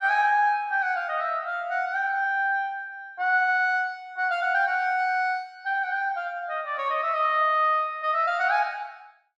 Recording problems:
none

